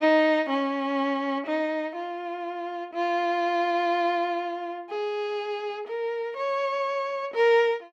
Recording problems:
none

